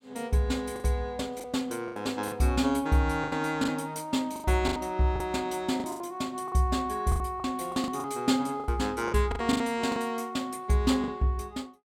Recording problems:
packet loss; 11% of the sound replaced, filled with the last packet

